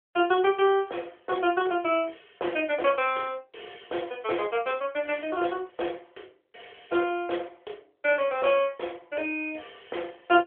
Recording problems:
phone line; 300 Hz to 3.5 kHz, AMR-NB

